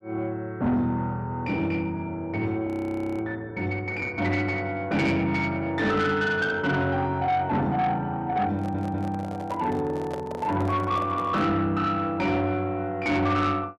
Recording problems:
distortion; soft clipping, signal-to-distortion ratio 11 dB
audio freezing; at 2.5 s for 0.5 s
audio stuttering; at 8.5 s
handling noise; from 8.5 to 11 s; peak -6 dB vs average level

